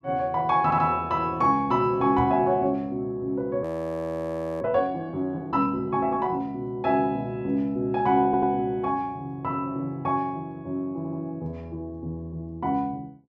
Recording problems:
stutter; at 0.5 s, at 8.5 s and at 11 s
knock on the microphone; at 2 s; peak -1 dB vs average level
audio freezing; at 3.5 s for 1 s

